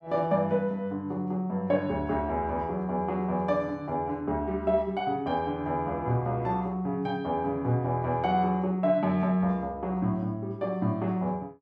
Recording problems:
none

